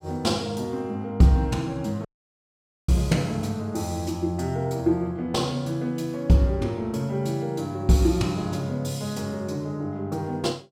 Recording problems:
dropout; at 2 s for 1 s

